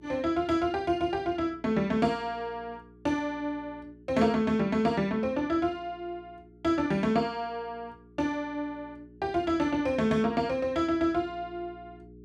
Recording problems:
electrical hum; 60 Hz, harmonics up to 420 Hz, SNR 24 dB

